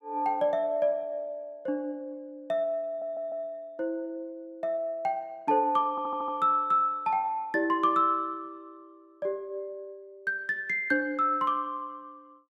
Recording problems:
audio stuttering; at 3 s and at 6 s

